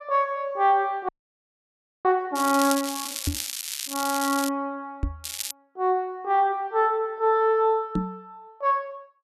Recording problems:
frozen audio; at 1 s for 1 s
crackling; from 2.5 to 4.5 s and at 5 s; loose cable, SNR 6 dB
microphone bump; at 3.5 s, at 5 s and at 8 s; peak +1 dB vs average level

